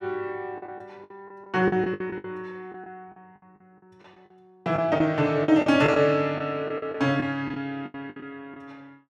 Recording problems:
packet loss; 13% of the sound replaced, filled with the last packet

